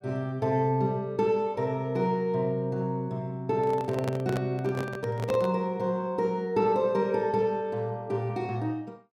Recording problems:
microphone handling noise; from 3.5 to 5.5 s; peak -1 dB vs average level

